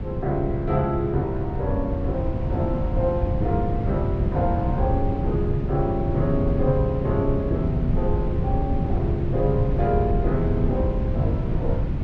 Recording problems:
wind noise; below 150 Hz, SNR 0 dB

